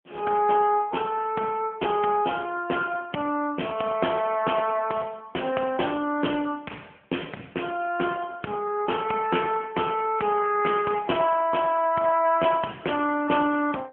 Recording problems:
telephone audio; 260 Hz to 3.1 kHz, AMR-NB

